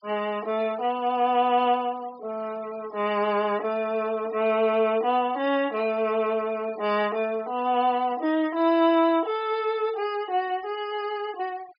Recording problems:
low-pass filter; nothing above 5.5 kHz
denoising artefacts; signal-to-artefact ratio 22 dB

